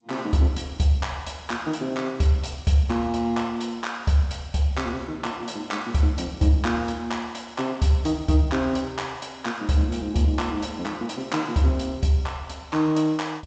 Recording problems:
codec artefacts; G.722, log-spectral distance 3 dB, nothing above 7.6 kHz

